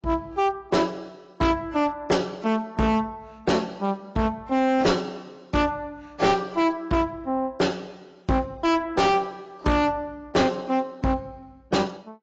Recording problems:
codec artefacts; AAC, log-spectral distance 2 dB, nothing above 7.3 kHz
distorted audio; hard clipping, uneven, signal-to-distortion ratio 7 dB

